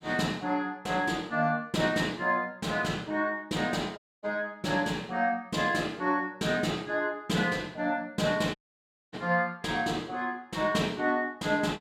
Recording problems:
dropout; at 4 s and at 8.5 s for 0.5 s

